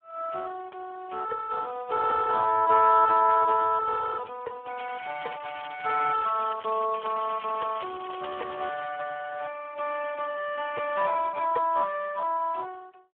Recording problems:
phone line; 340 Hz to 2.2 kHz, Speex
crackle; from 5 to 9 s; loose cable, SNR 19 dB

